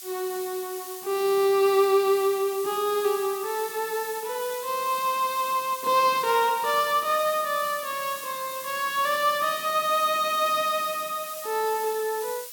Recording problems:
hiss; slope +5 dB per octave, SNR 12 dB

